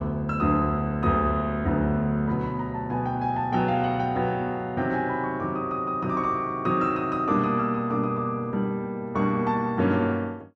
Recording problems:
none

